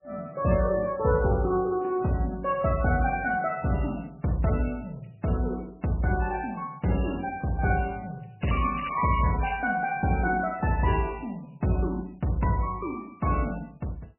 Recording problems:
lossy codec; MP3, log-spectral distance 5 dB, nothing above 2.4 kHz
crackling; from 8.5 to 9.5 s; loose cable, SNR 13 dB

